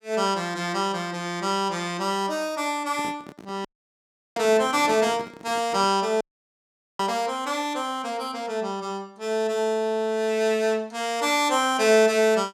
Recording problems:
handling noise; from 3 to 6 s; peak -10 dB vs average level
audio cutting out; at 3.5 s for 0.5 s and at 6 s for 1 s

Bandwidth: 17 kHz